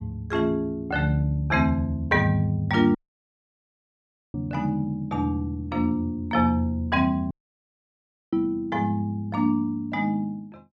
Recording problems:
audio cutting out; at 3 s for 1.5 s and at 7.5 s for 1 s

